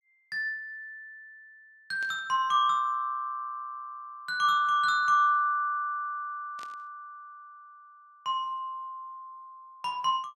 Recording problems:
burst of static; at 2 s and at 6.5 s; peak -15 dB vs average level

